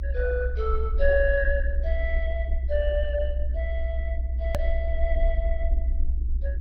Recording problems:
codec artefacts; MP2, log-spectral distance 2 dB, nothing above 17.1 kHz
rumble; below 62 Hz, SNR -1 dB
edit click; at 4.5 s

